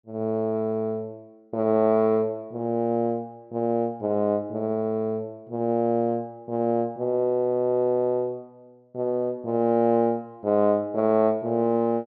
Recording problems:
low-pass filter; nothing above 6.8 kHz

